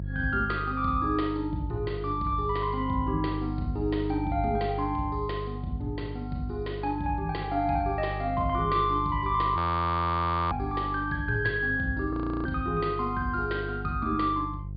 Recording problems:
treble cut off; nothing above 4.8 kHz
hum; 50 Hz, harmonics up to 350 Hz, SNR 8 dB
audio freezing; at 9.5 s for 1 s and at 12 s

